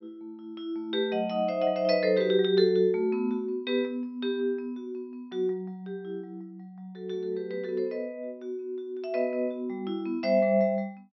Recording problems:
treble cut off; nothing above 5.8 kHz

